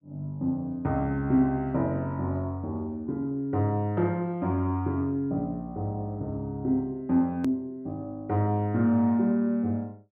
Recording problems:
edit click; at 7.5 s

